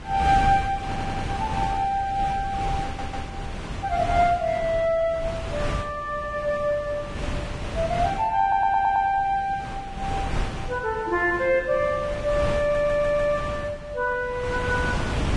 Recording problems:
lossy compression; Vorbis, log-spectral distance 2 dB
wind on the microphone; below 670 Hz, SNR 8 dB
stutter; 4 times, first at 1 s

